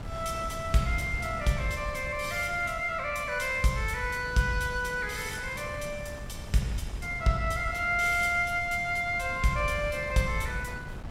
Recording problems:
wind noise; below 230 Hz, SNR 13 dB

